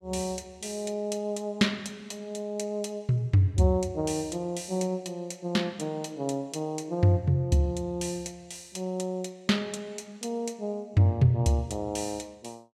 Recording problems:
none

